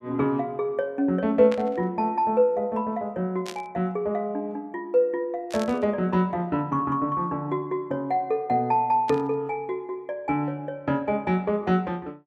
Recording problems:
burst of static; 4 times, first at 1.5 s; peak -6 dB vs average level

